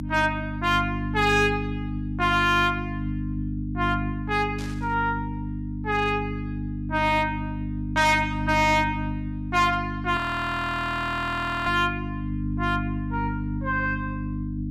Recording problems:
distortion; hard clipping, uneven, signal-to-distortion ratio 11 dB
mains hum; 50 Hz, harmonics up to 300 Hz, SNR 6 dB
static burst; at 4.5 s; peak -12 dB vs average level
frozen audio; at 10 s for 1.5 s

